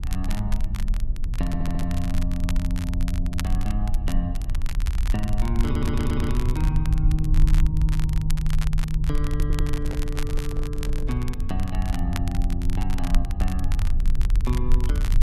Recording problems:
low-frequency rumble; below 56 Hz, SNR -3 dB
crackle; vinyl, SNR 11 dB
stutter; at 1.5 s, at 5.5 s and at 9.5 s
handling noise; from 10 to 11 s; peak -3 dB vs average level

